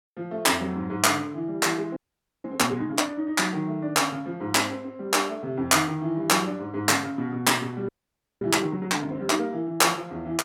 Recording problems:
audio freezing; at 2 s and at 8 s for 0.5 s

